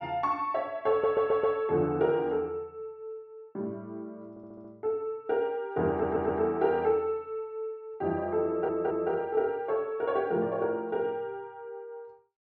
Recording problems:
low-pass filter; nothing above 8 kHz
stutter; 4 times, first at 1 s

